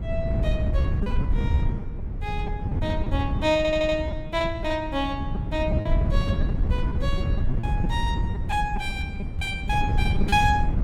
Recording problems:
wind noise; below 120 Hz, SNR -1 dB
lost packets; 9% of the sound replaced, filled with repeated pitch periods
audio stuttering; at 3.5 s

